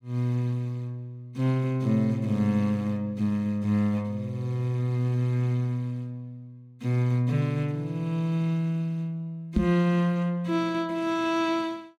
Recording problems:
microphone thump; at 9.5 s; peak +6 dB vs average level

